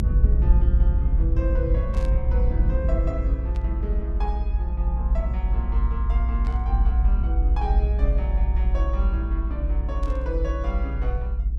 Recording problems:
low-frequency rumble; below 60 Hz, SNR -10 dB
burst of static; 4 times, first at 2 s; peak -8 dB vs average level

